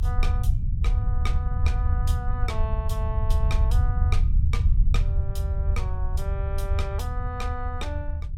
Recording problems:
low-frequency rumble; below 80 Hz, SNR -11 dB

